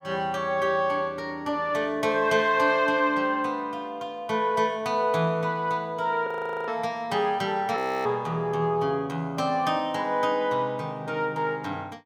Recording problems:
audio freezing; at 6.5 s and at 8 s

